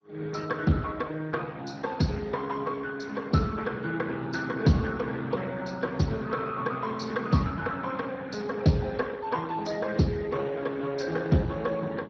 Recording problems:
lossy codec; MP2, then Speex, log-spectral distance 4 dB

